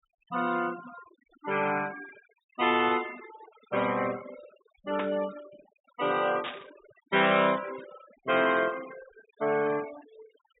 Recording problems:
treble missing; nothing above 4 kHz
noise reduction artefacts; signal-to-artefact ratio 16 dB
static burst; at 5 s and at 6.5 s; peak -3 dB vs average level

